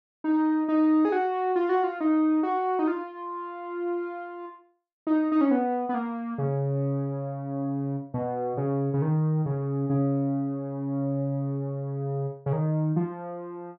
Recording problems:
none

